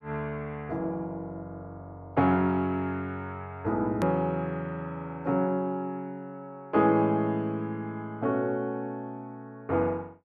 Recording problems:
click at an edit; at 4 s

